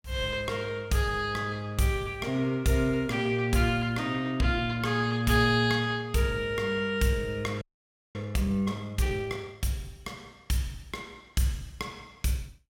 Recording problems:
audio freezing; at 7.5 s for 0.5 s

